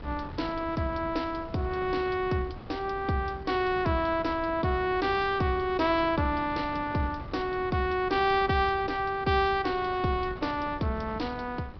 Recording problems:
low-pass filter; nothing above 5.5 kHz
wind noise; below 480 Hz, SNR 15 dB

